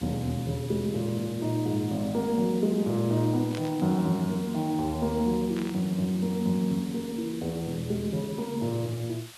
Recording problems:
hiss; SNR 17 dB
static burst; at 3.5 s and at 5.5 s; peak -9 dB vs average level

